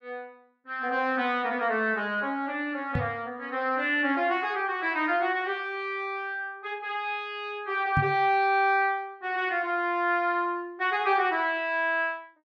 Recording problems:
knock on the microphone; at 3 s and at 8 s; peak +3 dB vs average level

